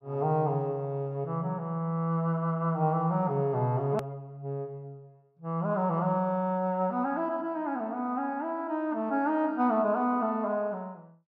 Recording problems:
hard cut with a click; at 4 s

